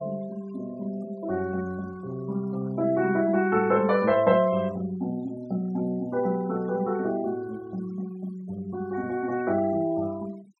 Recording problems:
denoising artefacts; signal-to-artefact ratio 22 dB

